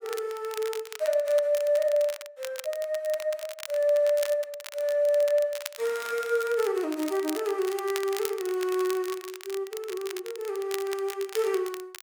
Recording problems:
crackling; vinyl, SNR 13 dB

